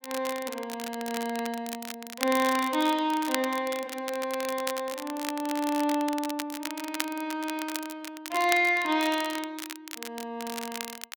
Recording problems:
crackle; vinyl, SNR 9 dB

